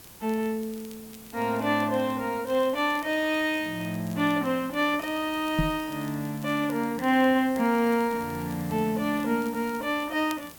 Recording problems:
hiss; slope -3 dB per octave, SNR 18 dB
crackle; vinyl, SNR 27 dB
microphone thump; at 5.5 s; peak +4 dB vs average level

